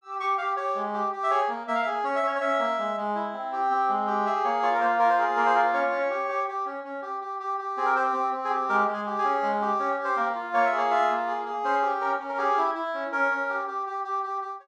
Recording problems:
none

